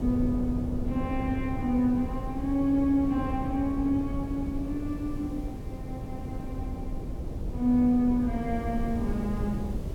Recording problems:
hiss; slope -2 dB per octave, SNR 29 dB
rumble; below 190 Hz, SNR 7 dB

